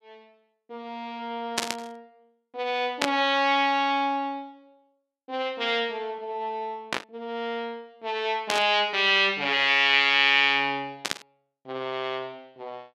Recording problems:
burst of static; 5 times, first at 1.5 s; peak +3 dB vs average level

